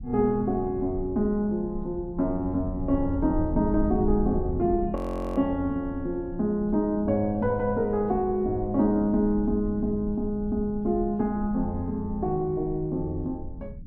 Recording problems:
low-frequency rumble; below 100 Hz, SNR 12 dB
audio freezing; at 5 s

